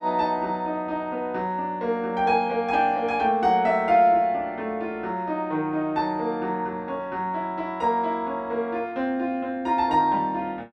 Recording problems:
none

